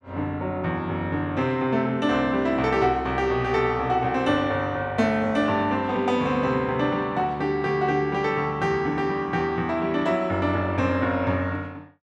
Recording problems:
none

